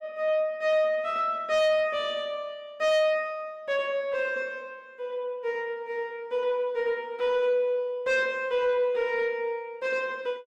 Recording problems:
distorted audio; soft clipping, signal-to-distortion ratio 8 dB

